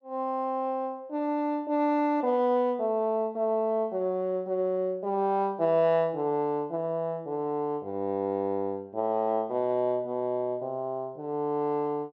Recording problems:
none

